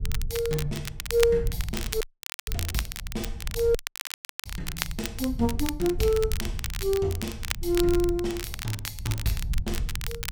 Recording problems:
low-frequency rumble; below 74 Hz, SNR 8 dB
crackling; vinyl, SNR 8 dB
audio cutting out; at 2 s and at 4 s for 0.5 s

